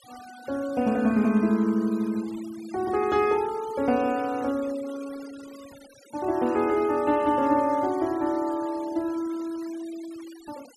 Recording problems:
denoising artefacts; signal-to-artefact ratio 22 dB

